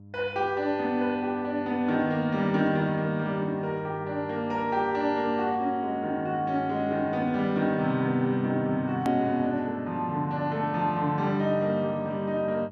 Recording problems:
mains hum; 50 Hz, harmonics up to 700 Hz, SNR 21 dB
hard cut with a click; at 9 s

